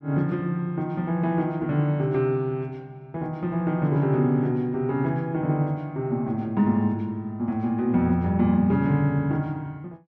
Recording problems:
none

